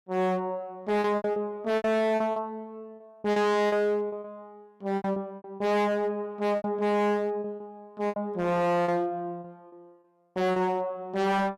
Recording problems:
distorted audio; hard clipping, signal-to-distortion ratio 6 dB
lost packets; 11% of the sound replaced, filled with repeated pitch periods

